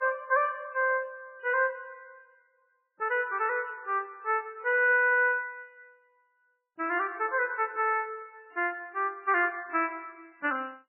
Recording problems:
lossy codec; MP3, log-spectral distance 3 dB

